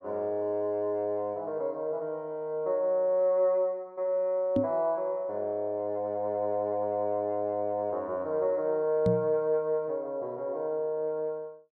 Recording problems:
microphone thump; at 4.5 s and at 9 s; peak +4 dB vs average level

